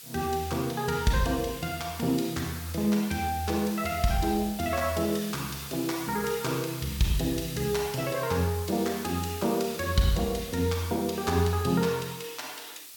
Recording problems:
hiss; slope +3 dB per octave, SNR 12 dB

